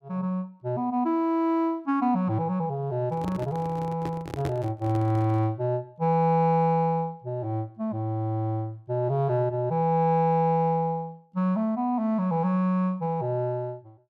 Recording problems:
microphone handling noise; from 3 to 5.5 s; peak -3 dB vs average level

